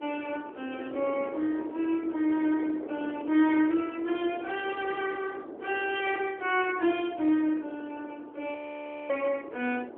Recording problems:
telephone audio; 260 Hz to 3.4 kHz, AMR-NB
wind on the microphone; below 540 Hz, SNR 13 dB
audio freezing; at 8.5 s for 0.5 s

